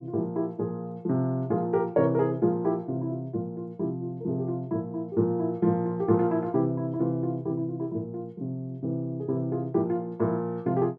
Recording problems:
none

